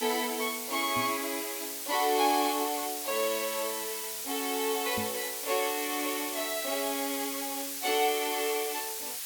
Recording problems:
hiss; slope +5 dB per octave, SNR 3 dB
microphone bump; at 1 s and at 5 s; peak -3 dB vs average level

